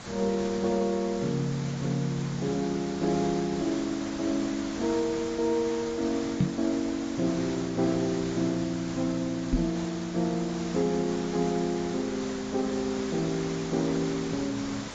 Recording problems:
lossy compression; AAC, log-spectral distance 11 dB
background hiss; slope -4 dB per octave, SNR 10 dB
microphone thump; at 6.5 s and at 9.5 s; peak +7 dB vs average level

